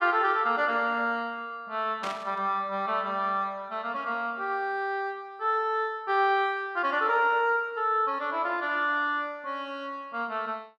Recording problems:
burst of static; at 2 s; peak -6 dB vs average level

